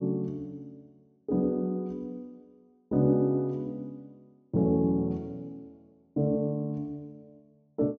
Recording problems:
low-pass filter; nothing above 8 kHz

